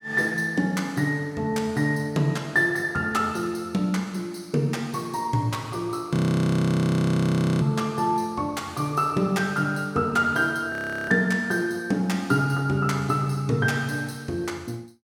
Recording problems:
audio freezing; at 6 s for 1.5 s and at 11 s

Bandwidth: 17.5 kHz